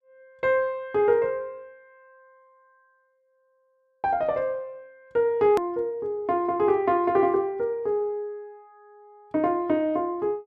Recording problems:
click at an edit; at 5.5 s

